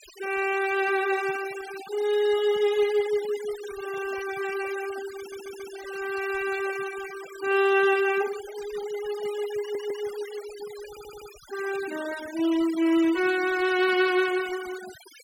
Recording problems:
denoising artefacts; signal-to-artefact ratio 15 dB
stutter; at 5 s, at 9.5 s and at 11 s

